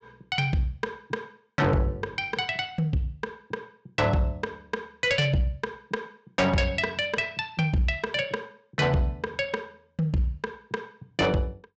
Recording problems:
treble missing; nothing above 8 kHz
distortion; soft clipping, signal-to-distortion ratio 10 dB

